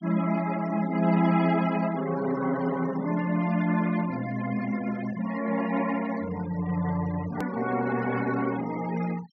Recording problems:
low-pass filter; nothing above 6 kHz
noise reduction artefacts; signal-to-artefact ratio 16 dB
edit click; at 7.5 s

